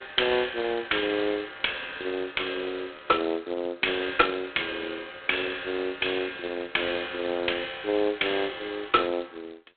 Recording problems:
phone line; 300 Hz to 3.8 kHz, G.726

